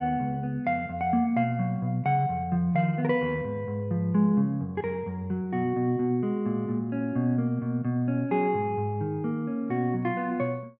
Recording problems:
none

